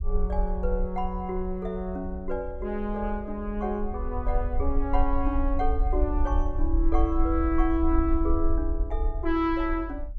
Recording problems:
low-frequency rumble; below 54 Hz, strongest tone 18 Hz, SNR 2 dB

